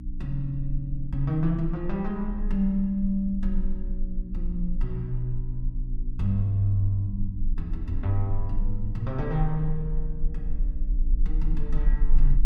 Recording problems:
hum; 60 Hz, harmonics up to 300 Hz, SNR 13 dB
low-frequency rumble; below 34 Hz, strongest tone 20 Hz, SNR 4 dB

